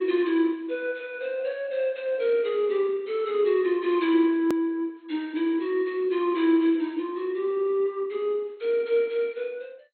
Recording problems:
lossy compression; MP2, log-spectral distance 2 dB, nothing above 16 kHz
edit click; at 4.5 s

